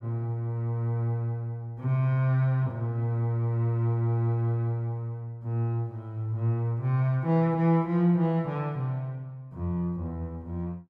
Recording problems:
none

